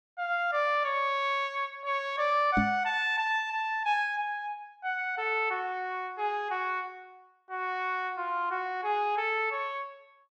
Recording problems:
microphone bump; at 2.5 s; peak +5 dB vs average level

